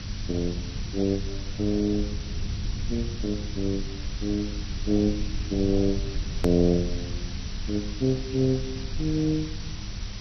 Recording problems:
lossy compression; MP2, log-spectral distance 14 dB, nothing above 13.1 kHz
mains hum; 50 Hz, harmonics up to 700 Hz, SNR 17 dB
background hiss; slope +2 dB per octave, SNR 13 dB
rumble; below 94 Hz, SNR 8 dB
hard cut with a click; at 6.5 s

